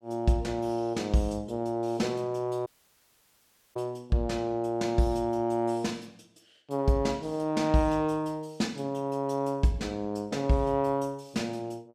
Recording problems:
dropout; at 2.5 s for 1 s

